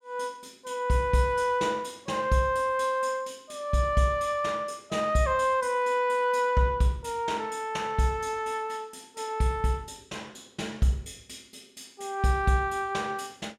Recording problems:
none

